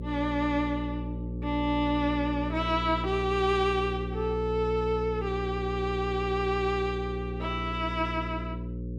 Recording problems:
electrical hum; 60 Hz, harmonics up to 540 Hz, SNR 6 dB

